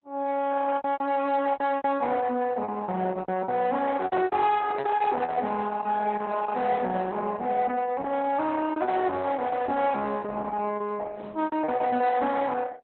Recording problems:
lossy compression; Opus, log-spectral distance 3 dB, nothing above 3.9 kHz
distortion; soft clipping, signal-to-distortion ratio 10 dB
lost packets; 12% of the sound replaced, filled with repeated pitch periods
handling noise; from 4 to 5.5 s; peak -2 dB vs average level

